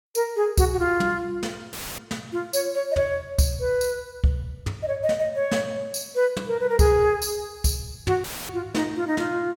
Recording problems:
audio cutting out; at 1.5 s and at 8 s; filled with static

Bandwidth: 17 kHz